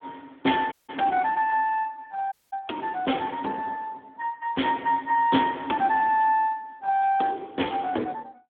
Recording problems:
telephone audio; 220 Hz to 3.5 kHz, Speex
audio cutting out; at 0.5 s and at 2.5 s

